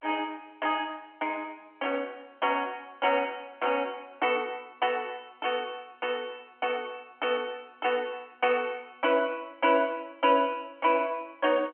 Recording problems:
phone line; 220 Hz to 3.2 kHz, G.711

